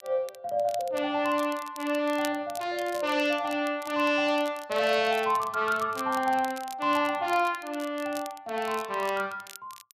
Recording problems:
crackling; vinyl, SNR 19 dB

